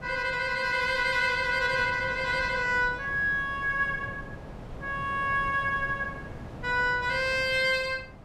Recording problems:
wind noise; below 550 Hz, SNR 16 dB

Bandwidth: 14.5 kHz